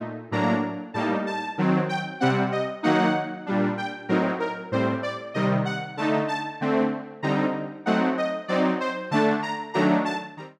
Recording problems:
none

